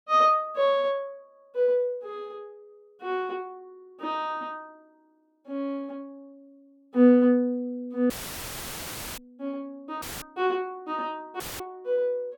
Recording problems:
audio cutting out; at 8 s for 1 s, at 10 s and at 11 s; filled with static

